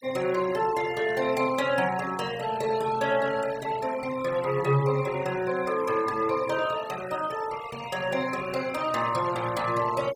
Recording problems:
denoising artefacts; signal-to-artefact ratio 15 dB

